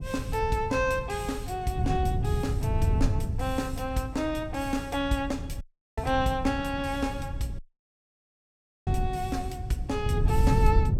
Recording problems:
wind on the microphone; below 120 Hz, SNR 1 dB
dropout; at 5.5 s and at 7.5 s for 1.5 s

